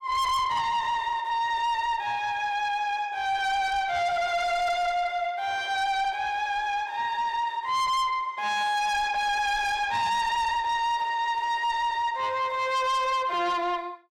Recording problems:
distortion; soft clipping, signal-to-distortion ratio 8 dB

